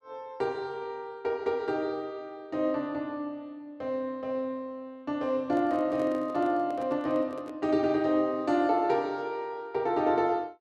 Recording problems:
handling noise; from 5.5 to 7.5 s; peak -7 dB vs average level

